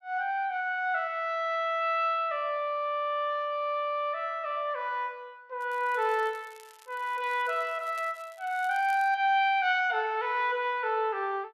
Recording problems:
crackling; from 5.5 to 9 s; loose cable, SNR 26 dB

